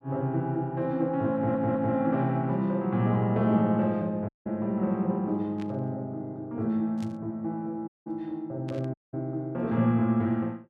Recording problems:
audio stuttering; at 1.5 s
audio cutting out; at 4.5 s, at 8 s and at 9 s
burst of static; at 5.5 s, at 7 s and at 8.5 s; peak -15 dB vs average level

